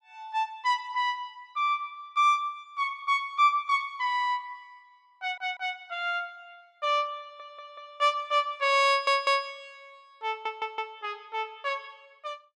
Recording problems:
audio stuttering; 4 times, first at 5 s

